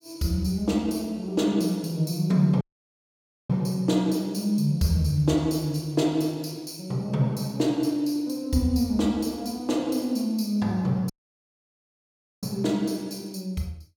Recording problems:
audio cutting out; at 2.5 s for 1 s and at 11 s for 1.5 s

